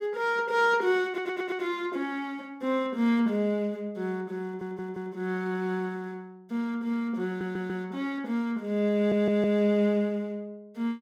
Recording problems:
stutter; 4 times, first at 1 s

